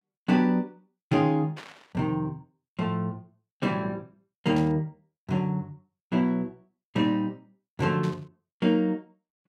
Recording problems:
static burst; at 1.5 s, at 4.5 s and at 8 s; peak -10 dB vs average level

